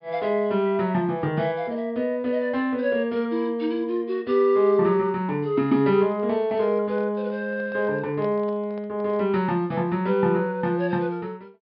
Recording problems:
treble missing; nothing above 5.3 kHz
handling noise; from 6 to 9.5 s; peak -12 dB vs average level

